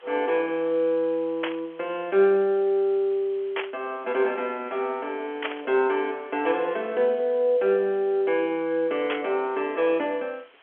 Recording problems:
telephone audio; 300 Hz to 3.6 kHz, G.711
background hiss; SNR 28 dB
burst of static; 4 times, first at 1.5 s; peak 0 dB vs average level

